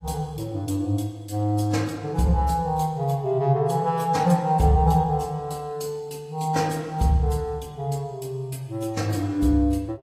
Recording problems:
codec artefacts; AAC, log-spectral distance 2 dB

